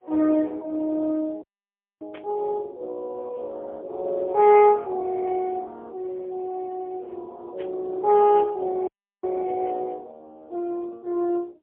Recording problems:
telephone audio; 260 Hz to 2.9 kHz, AMR-NB, then MP3
dropout; at 1.5 s for 0.5 s and at 9 s
static burst; at 2 s and at 7.5 s; peak -14 dB vs average level

